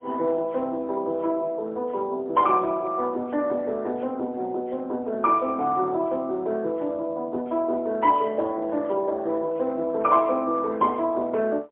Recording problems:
telephone audio; 280 Hz to 3 kHz, AMR-NB, then MP3

